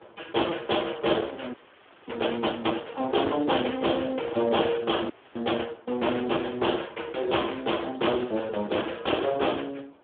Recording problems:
phone line; 240 Hz to 3.5 kHz, Speex
distortion; hard clipping, uneven, signal-to-distortion ratio 14 dB
wind on the microphone; below 1 kHz, SNR 22 dB
audio freezing; at 1.5 s for 0.5 s and at 5 s

